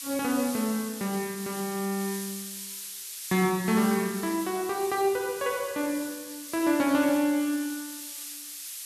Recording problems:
hiss; slope +6 dB per octave, SNR 10 dB

